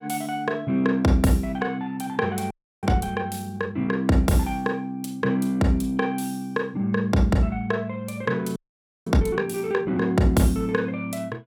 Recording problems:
frozen audio; at 2.5 s and at 8.5 s for 0.5 s

